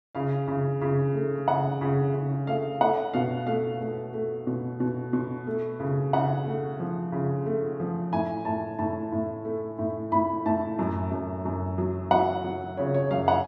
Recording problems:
none

